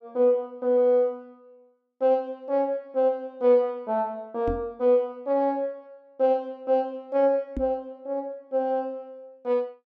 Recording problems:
knock on the microphone; at 4.5 s and at 7.5 s; peak -2 dB vs average level

